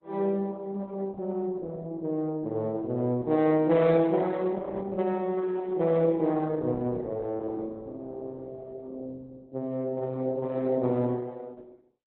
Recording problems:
lossy compression; Opus, log-spectral distance 2 dB, nothing above 4 kHz

